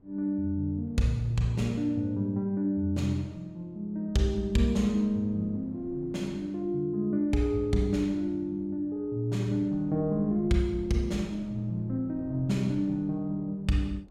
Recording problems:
wind noise; below 300 Hz, SNR 22 dB

